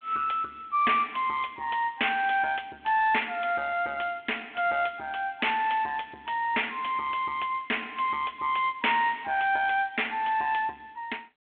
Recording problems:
telephone audio; 320 Hz to 3.5 kHz, G.726
distorted audio; soft clipping, signal-to-distortion ratio 13 dB

